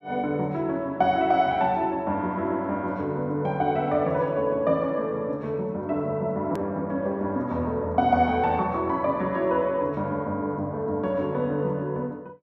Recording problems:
click at an edit; at 6.5 s

